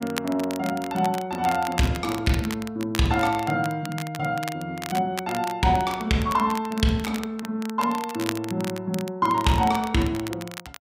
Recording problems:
crackle; vinyl, SNR 13 dB

